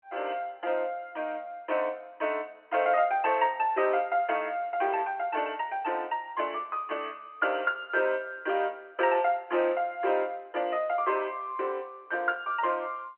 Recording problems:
phone line; 320 Hz to 3.1 kHz, G.711

